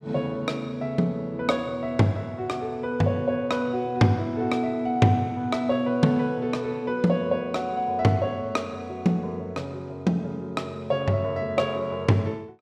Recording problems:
none

